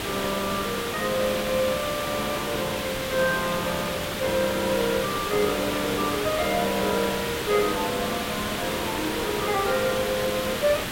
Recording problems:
hiss; SNR 2 dB

